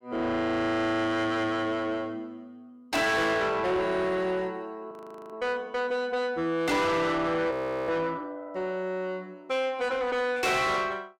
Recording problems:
distorted audio; soft clipping, signal-to-distortion ratio 6 dB
frozen audio; at 5 s and at 7.5 s

